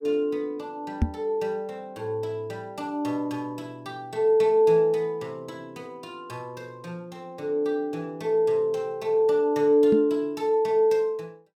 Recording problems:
knock on the microphone; at 1 s and at 10 s; peak +5 dB vs average level

